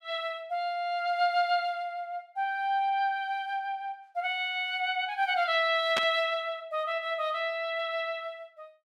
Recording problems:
static burst; at 6 s; peak +3 dB vs average level

